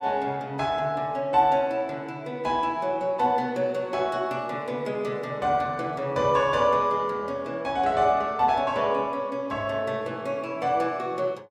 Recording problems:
none

